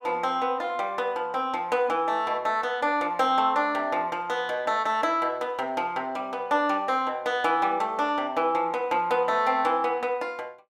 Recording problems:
none

